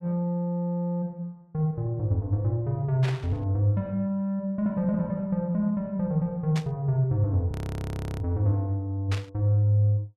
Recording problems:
static burst; at 3 s, at 6.5 s and at 9 s; peak -5 dB vs average level
audio freezing; at 7.5 s for 0.5 s

